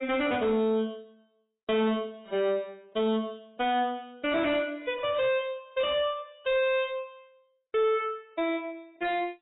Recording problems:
lossy codec; AAC, log-spectral distance 2 dB, nothing above 3.2 kHz
distorted audio; soft clipping, signal-to-distortion ratio 7 dB

